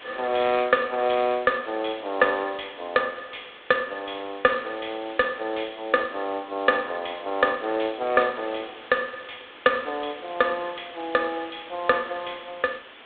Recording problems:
telephone audio; 260 Hz to 3.9 kHz, G.726
background hiss; SNR 19 dB

